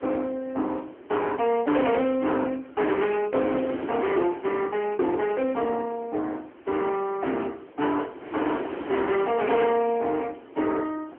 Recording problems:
phone line; 240 Hz to 3.3 kHz, AMR-NB
distortion; hard clipping, signal-to-distortion ratio 11 dB
wind on the microphone; below 740 Hz, SNR 14 dB

